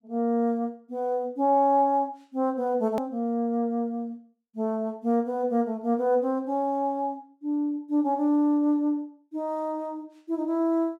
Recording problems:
click at an edit; at 3 s

